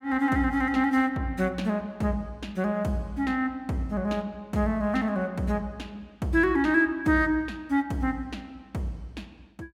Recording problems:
none

